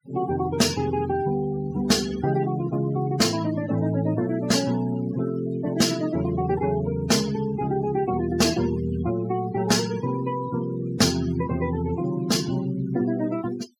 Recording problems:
noise reduction artefacts; signal-to-artefact ratio 16 dB

